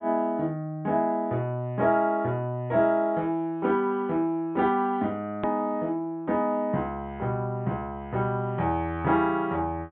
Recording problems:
treble cut off; nothing above 4 kHz
click at an edit; at 5.5 s

